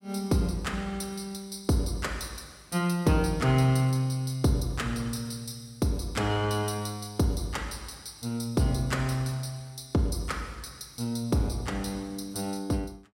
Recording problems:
none

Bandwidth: 16 kHz